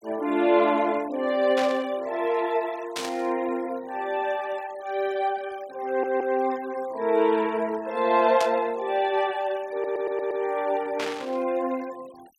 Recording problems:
noise reduction artefacts; signal-to-artefact ratio 23 dB
burst of static; 4 times, first at 1.5 s; peak -2 dB vs average level
stutter; at 6 s and at 9.5 s

